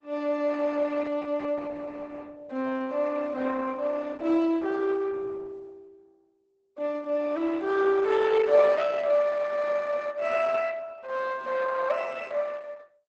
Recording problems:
lossy codec; Opus, log-spectral distance 3 dB, nothing above 8 kHz

